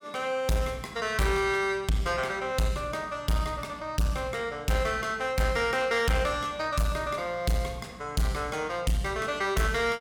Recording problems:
distortion; soft clipping, signal-to-distortion ratio 11 dB

